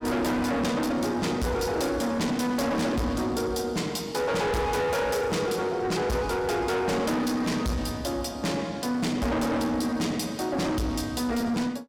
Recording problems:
distorted audio; soft clipping, signal-to-distortion ratio 6 dB

